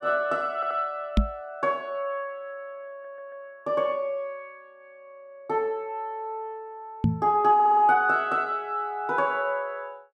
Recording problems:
audio stuttering; at 0.5 s, at 3 s and at 7.5 s
knock on the microphone; at 1 s and at 7 s; peak +7 dB vs average level

